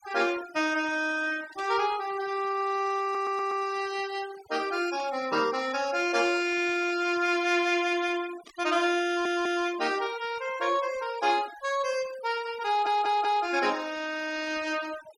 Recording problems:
denoising artefacts; signal-to-artefact ratio 18 dB
static burst; at 1.5 s, at 5 s and at 8.5 s; peak -16 dB vs average level
stutter; at 3 s, at 9 s and at 13 s

